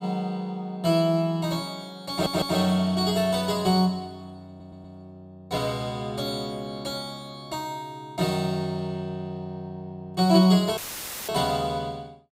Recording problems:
audio stuttering; at 2 s and at 4.5 s
audio cutting out; at 11 s for 0.5 s; filled with static

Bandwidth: 15.5 kHz